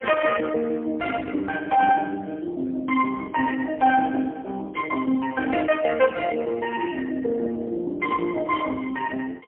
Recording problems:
phone line; 240 Hz to 2.3 kHz, AMR-NB, then MP3

